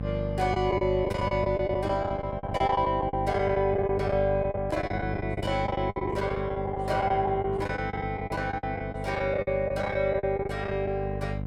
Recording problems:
electrical hum; 50 Hz, harmonics up to 800 Hz, SNR 7 dB
packet loss; 16% of the sound replaced, filled with the last packet

